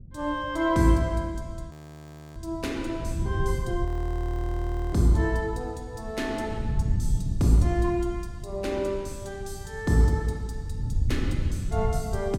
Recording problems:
wind on the microphone; below 110 Hz, SNR 5 dB
audio freezing; at 1.5 s for 0.5 s and at 4 s for 1 s

